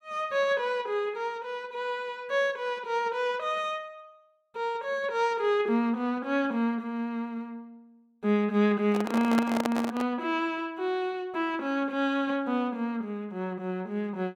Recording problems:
handling noise; from 9 to 10 s; peak +3 dB vs average level

